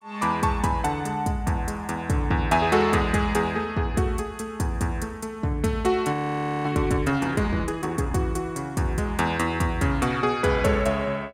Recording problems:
audio freezing; at 6 s for 0.5 s

